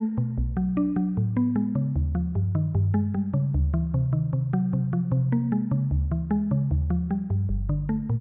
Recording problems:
treble cut off; nothing above 4 kHz

